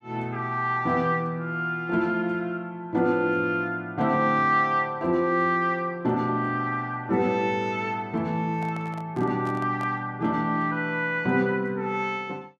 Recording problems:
microphone handling noise; from 8.5 to 10 s; peak -11 dB vs average level

